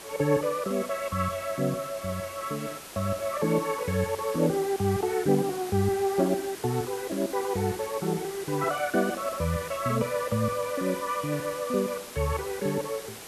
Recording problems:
hiss; slope -2 dB per octave, SNR 12 dB

